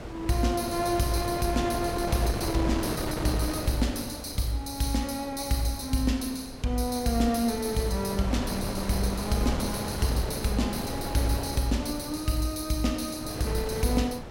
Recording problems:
wind noise; below 740 Hz, SNR 7 dB

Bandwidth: 16.5 kHz